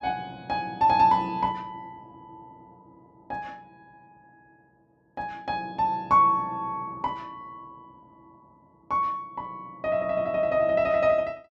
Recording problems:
none

